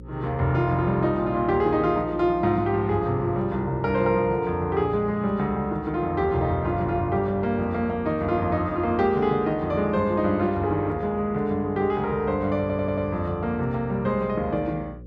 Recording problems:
mains hum; 60 Hz, harmonics up to 540 Hz, SNR 20 dB
stutter; at 13 s

